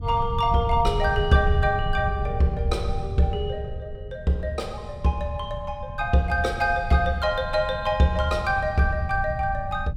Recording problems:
low-frequency rumble; below 110 Hz, SNR 8 dB

